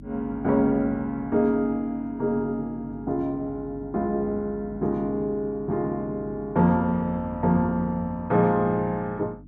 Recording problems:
hum; 50 Hz, harmonics up to 300 Hz, SNR 18 dB

